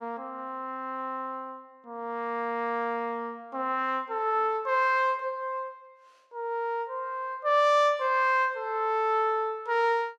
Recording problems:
none

